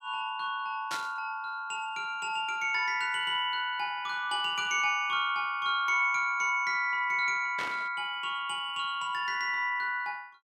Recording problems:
burst of static; at 1 s and at 7.5 s; peak -4 dB vs average level

